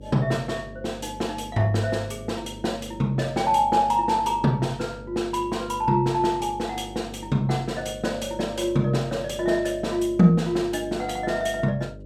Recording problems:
hum; 50 Hz, harmonics up to 600 Hz, SNR 17 dB

